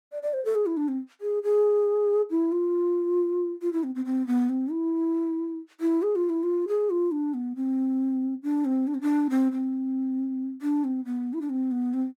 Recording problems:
none

